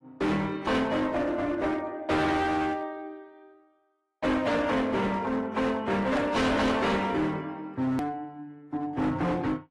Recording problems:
lossy codec; AAC, then AAC, log-spectral distance 2 dB, nothing above 11.6 kHz
distorted audio; hard clipping, uneven, signal-to-distortion ratio 7 dB
edit click; at 8 s

